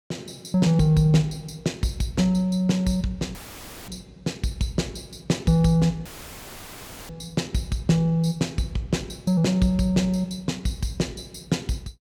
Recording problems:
dropout; at 3.5 s for 0.5 s and at 6 s for 1 s; filled with static

